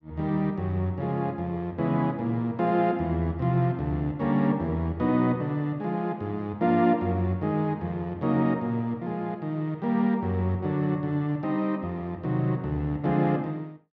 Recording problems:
treble missing; nothing above 8 kHz

